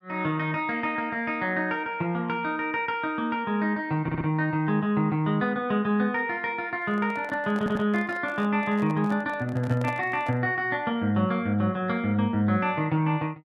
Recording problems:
stutter; at 4 s and at 7.5 s
microphone handling noise; from 7 to 10 s; peak -5 dB vs average level

